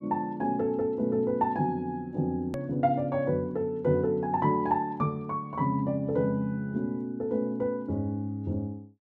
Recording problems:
edit click; at 2.5 s

